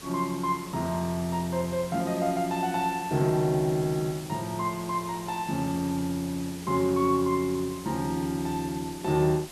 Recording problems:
background hiss; SNR 14 dB

